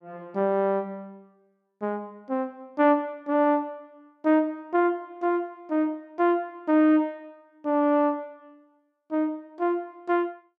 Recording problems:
none

